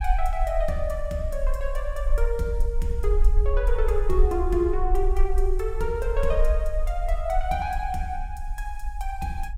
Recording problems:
low-frequency rumble; below 46 Hz, strongest tone 22 Hz, SNR 0 dB

